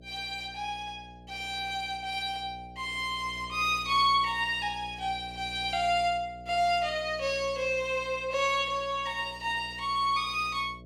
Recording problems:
electrical hum; 60 Hz, harmonics up to 660 Hz, SNR 20 dB

